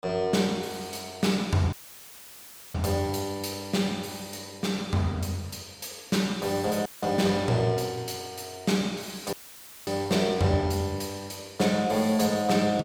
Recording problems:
dropout; at 1.5 s for 1 s, at 7 s and at 9.5 s for 0.5 s; filled with static

